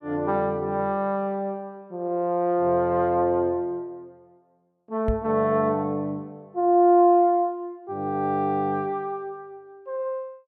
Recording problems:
microphone thump; at 5 s; peak 0 dB vs average level

